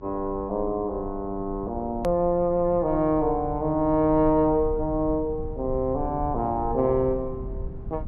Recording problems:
treble cut off; nothing above 7.2 kHz
low-frequency rumble; below 98 Hz, SNR 13 dB
edit click; at 2 s

